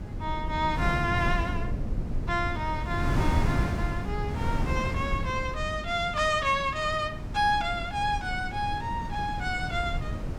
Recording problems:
low-frequency rumble; below 150 Hz, SNR 7 dB
wind on the microphone; below 250 Hz, SNR 5 dB

